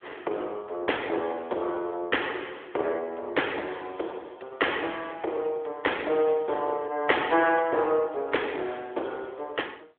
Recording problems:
telephone audio; 300 Hz to 3.5 kHz, AMR-NB
distorted audio; hard clipping, uneven, signal-to-distortion ratio 16 dB

